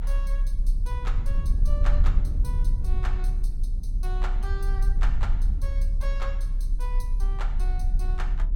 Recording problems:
low-frequency rumble; below 44 Hz, strongest tone 32 Hz, SNR -14 dB

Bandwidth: 17 kHz